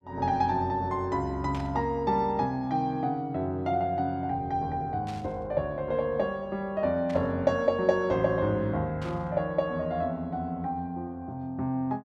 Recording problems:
static burst; 4 times, first at 1.5 s; peak -10 dB vs average level

